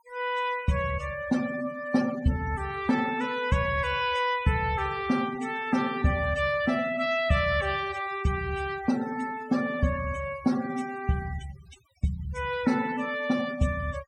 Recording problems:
noise reduction artefacts; signal-to-artefact ratio 17 dB

